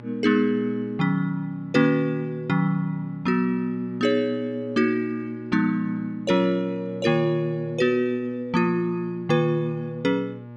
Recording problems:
hum; 60 Hz, harmonics up to 1.4 kHz, SNR 18 dB

